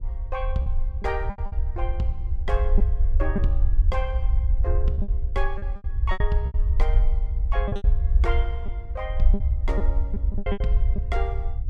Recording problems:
electrical hum; 60 Hz, harmonics up to 540 Hz, SNR 20 dB
rumble; below 62 Hz, SNR -8 dB
lost packets; 9% of the sound replaced, filled with repeated pitch periods

